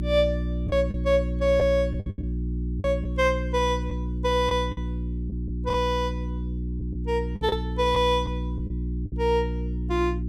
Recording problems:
hum; 60 Hz, harmonics up to 360 Hz, SNR 4 dB
packet loss; 5% of the sound replaced, filled with the last packet

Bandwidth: 16 kHz